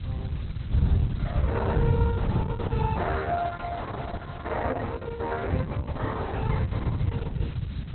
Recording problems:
lossy codec; Opus, log-spectral distance 3 dB, nothing above 4 kHz
hiss; SNR 17 dB
wind noise; below 130 Hz, SNR -6 dB

